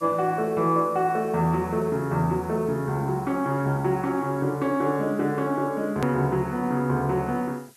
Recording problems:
hiss; slope +1 dB per octave, SNR 27 dB
edit click; at 6 s

